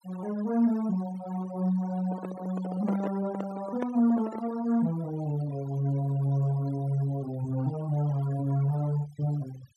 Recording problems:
noise reduction artefacts; signal-to-artefact ratio 20 dB
handling noise; from 2 to 4.5 s; peak -2 dB vs average level

